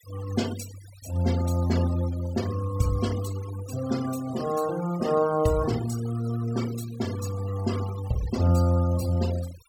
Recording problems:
noise reduction artefacts; signal-to-artefact ratio 15 dB

